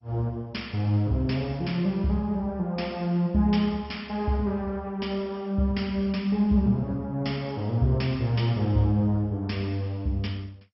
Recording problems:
codec artefacts; MP2, log-spectral distance 2 dB, nothing above 5.5 kHz

